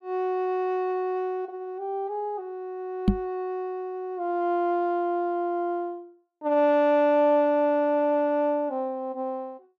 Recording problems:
microphone bump; at 3 s; peak +9 dB vs average level

